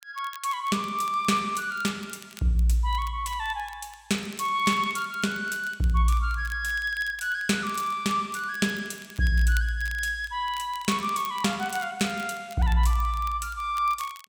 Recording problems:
crackle; vinyl, SNR 21 dB

